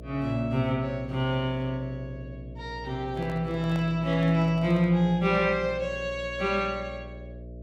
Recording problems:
electrical hum; 60 Hz, harmonics up to 660 Hz, SNR 15 dB
handling noise; from 3 to 5 s; peak -9 dB vs average level

